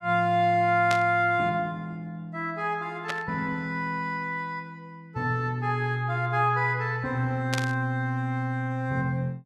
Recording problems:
burst of static; at 1 s, at 3 s and at 7.5 s; peak 0 dB vs average level

